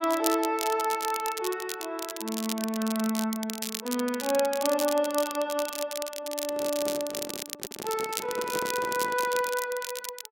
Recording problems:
crackling; vinyl, SNR 6 dB
microphone handling noise; from 6.5 to 9.5 s; peak -4 dB vs average level

